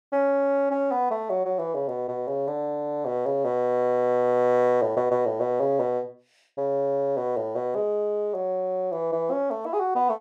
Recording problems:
none

